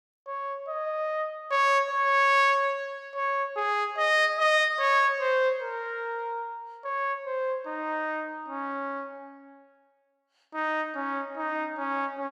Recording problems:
none

